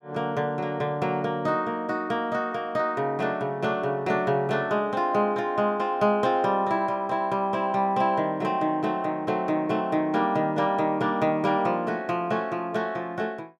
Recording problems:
none

